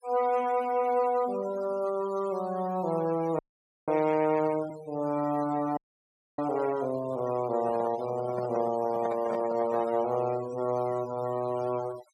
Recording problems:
noise reduction artefacts; signal-to-artefact ratio 17 dB
audio freezing; at 3.5 s and at 6 s for 0.5 s
handling noise; from 7.5 to 10 s; peak -2 dB vs average level

